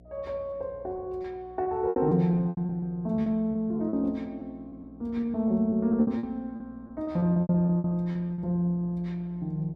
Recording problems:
hum; 60 Hz, harmonics up to 720 Hz, SNR 25 dB
lost packets; 13% of the sound replaced, filled with repeated pitch periods

